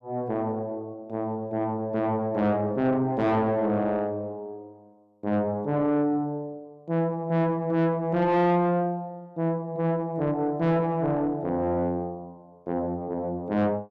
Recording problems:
distortion; soft clipping, signal-to-distortion ratio 8 dB

